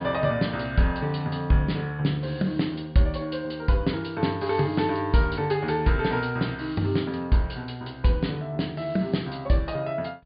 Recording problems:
low-pass filter; nothing above 4.9 kHz

